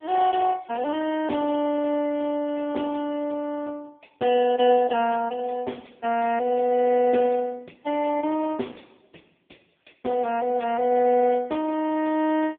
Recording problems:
phone line; 190 Hz to 3.2 kHz, AMR-NB

